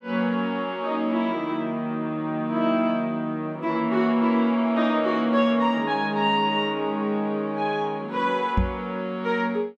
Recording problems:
microphone thump; at 8.5 s; peak +4 dB vs average level

